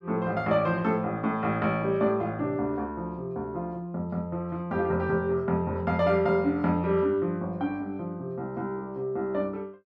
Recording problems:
none

